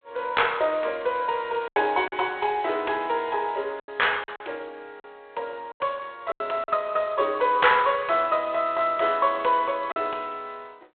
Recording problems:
telephone audio; 340 Hz to 3.7 kHz, G.726
lost packets; 5% of the sound replaced, filled with silence

